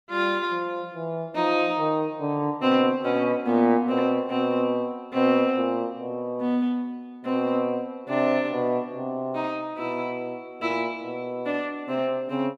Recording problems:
none

